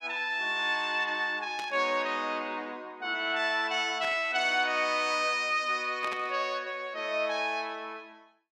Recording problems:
static burst; at 1.5 s, at 4 s and at 6 s; peak -6 dB vs average level

